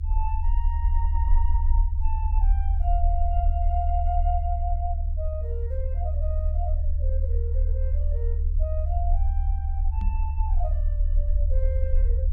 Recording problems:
low-frequency rumble; below 72 Hz, strongest tone 34 Hz, SNR -10 dB
microphone bump; at 10 s; peak +2 dB vs average level

